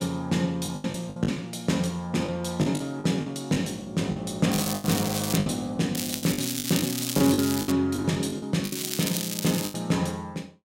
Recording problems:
lost packets; 11% of the sound replaced, filled with the last packet
crackling; at 4.5 s, from 6 to 7.5 s and from 8.5 to 9.5 s; loose cable, SNR 4 dB

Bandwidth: 16 kHz